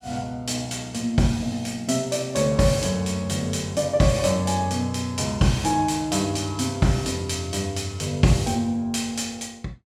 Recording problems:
none

